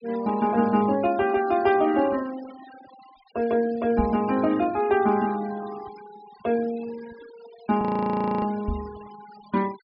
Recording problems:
treble cut off; nothing above 5.5 kHz
noise reduction artefacts; signal-to-artefact ratio 20 dB
knock on the microphone; at 4 s and at 8.5 s; peak 0 dB vs average level
audio freezing; at 8 s for 0.5 s

